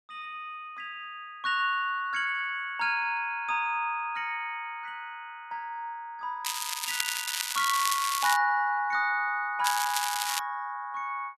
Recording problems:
crackling; from 6.5 to 8.5 s and at 9.5 s; loose cable, SNR 1 dB

